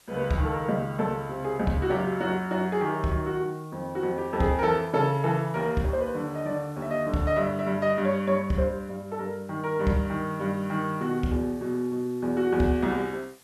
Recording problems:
background hiss; slope -1 dB per octave, SNR 28 dB

